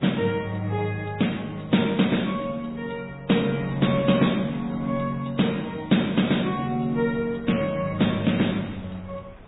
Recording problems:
treble missing; nothing above 3.8 kHz
codec artefacts; MP3, log-spectral distance 6 dB
wind noise; below 710 Hz, SNR 23 dB

